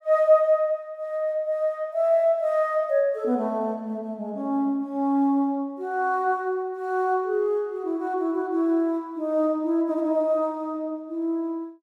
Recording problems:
none

